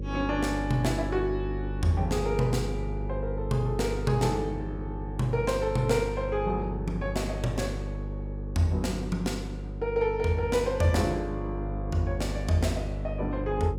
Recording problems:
hum; 50 Hz, harmonics up to 550 Hz, SNR 5 dB

